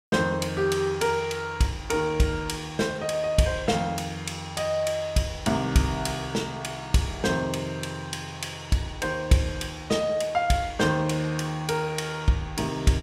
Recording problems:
none

